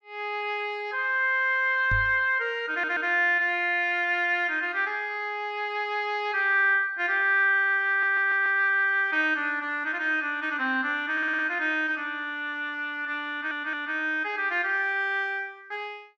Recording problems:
microphone thump; at 2 s; peak -3 dB vs average level
stutter; 4 times, first at 2.5 s

